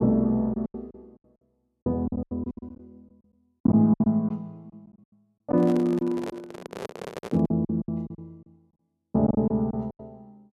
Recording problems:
packet loss; 16% of the sound replaced, filled with silence
microphone handling noise; from 5.5 to 7.5 s; peak -5 dB vs average level

